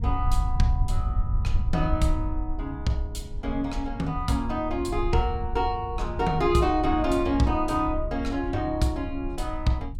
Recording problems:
rumble; below 76 Hz, SNR 5 dB

